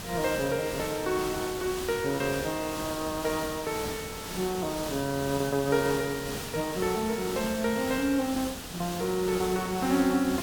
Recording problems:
hiss; slope -3 dB per octave, SNR 7 dB
lost packets; 3% of the sound replaced, filled with repeated pitch periods

